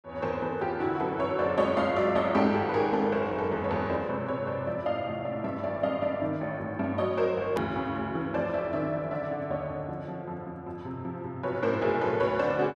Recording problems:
hard cut with a click; at 7.5 s

